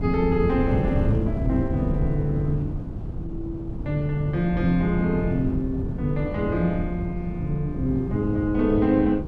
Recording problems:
wind on the microphone; below 190 Hz, SNR 4 dB

